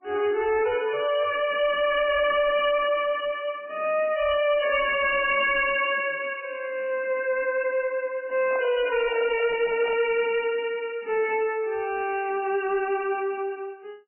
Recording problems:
lossy compression; MP3, log-spectral distance 5 dB, nothing above 2.9 kHz
distortion; soft clipping, signal-to-distortion ratio 10 dB
crackling; from 4 to 7 s and at 12 s; loose cable, SNR 26 dB
handling noise; from 8.5 to 10 s; peak -8 dB vs average level

